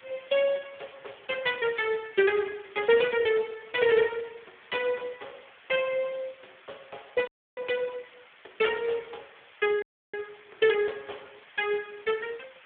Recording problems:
telephone audio; 300 Hz to 3.5 kHz, Speex
background hiss; SNR 24 dB
frozen audio; at 7.5 s and at 10 s

